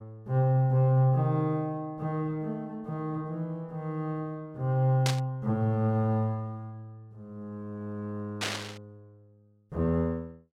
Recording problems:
burst of static; at 5 s and at 8.5 s; peak +2 dB vs average level

